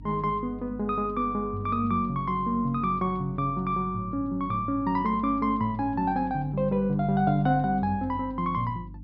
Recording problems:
treble missing; nothing above 5.5 kHz
hum; 50 Hz, harmonics up to 300 Hz, SNR 17 dB

